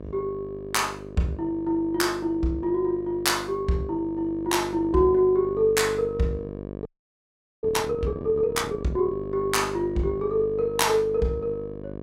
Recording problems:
electrical hum; 50 Hz, harmonics up to 1.3 kHz, SNR 13 dB
frozen audio; at 7 s for 1 s

